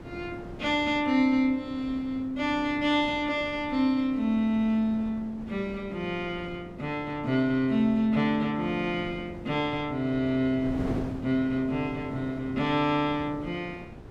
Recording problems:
wind noise; below 430 Hz, SNR 15 dB

